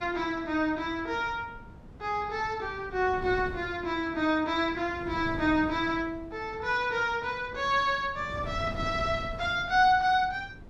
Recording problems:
wind on the microphone; below 260 Hz, SNR 15 dB

